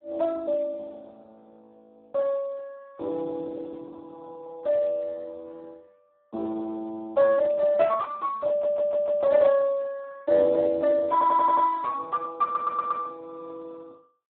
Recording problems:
telephone audio; 280 Hz to 2 kHz, Speex
audio stuttering; at 8.5 s, at 11 s and at 12 s

